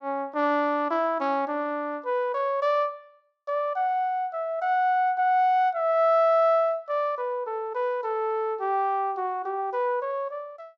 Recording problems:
none

